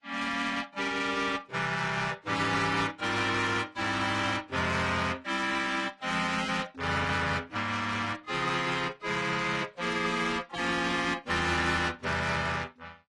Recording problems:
lossy compression; AAC, then AAC, log-spectral distance 5 dB, nothing above 11 kHz
distorted audio; soft clipping, signal-to-distortion ratio 12 dB

